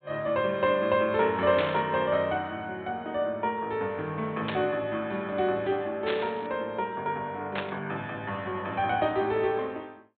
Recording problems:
treble missing; nothing above 4 kHz
burst of static; 4 times, first at 1.5 s; peak 0 dB vs average level

